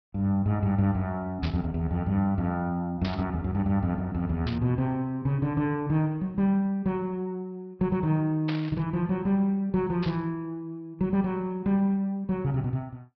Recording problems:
treble cut off; nothing above 5.5 kHz
static burst; 5 times, first at 1.5 s; peak -4 dB vs average level

